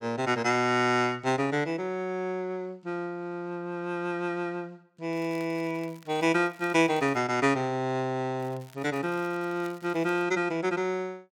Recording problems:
crackling; from 5 to 7 s and from 8.5 to 10 s; loose cable, SNR 26 dB

